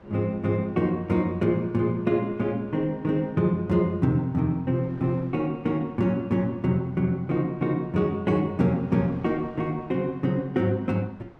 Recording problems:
wind noise; below 860 Hz, SNR 25 dB

